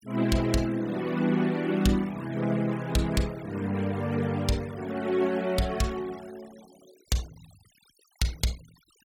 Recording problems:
denoising artefacts; signal-to-artefact ratio 22 dB

